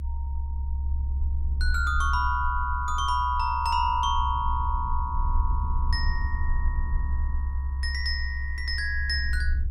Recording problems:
low-frequency rumble; below 68 Hz, SNR 1 dB

